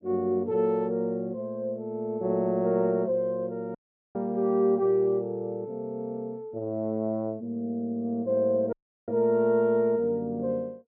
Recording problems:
audio cutting out; at 4 s and at 8.5 s

